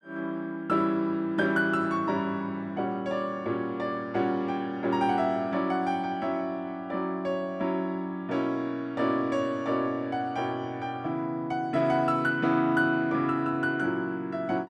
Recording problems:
none

